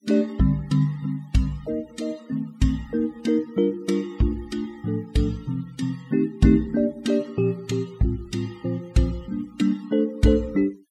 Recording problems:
denoising artefacts; signal-to-artefact ratio 24 dB

